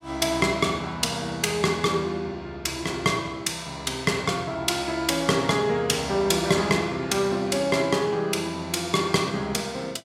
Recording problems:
none

